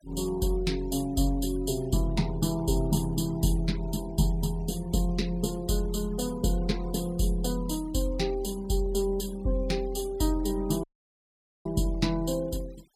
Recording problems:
denoising artefacts; signal-to-artefact ratio 23 dB
audio cutting out; at 11 s for 1 s

